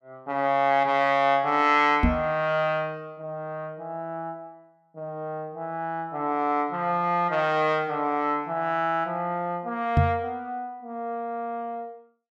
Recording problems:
microphone thump; at 2 s and at 10 s; peak +8 dB vs average level

